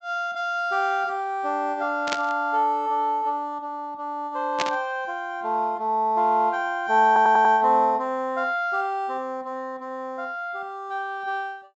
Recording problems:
treble cut off; nothing above 8 kHz
static burst; at 2 s and at 4.5 s; peak +2 dB vs average level
stutter; at 7 s

